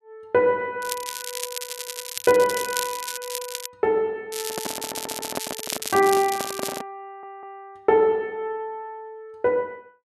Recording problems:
crackling; from 1 to 3.5 s and from 4.5 to 7 s; loose cable, SNR 7 dB
audio stuttering; at 1.5 s, at 4.5 s and at 7 s
microphone handling noise; from 4.5 to 7 s; peak -1 dB vs average level

